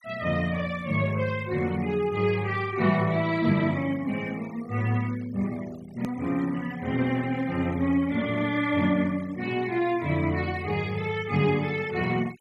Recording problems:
denoising artefacts; signal-to-artefact ratio 21 dB
edit click; at 6 s

